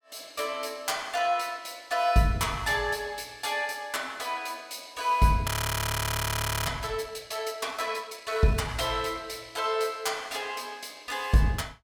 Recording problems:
frozen audio; at 5.5 s for 1 s

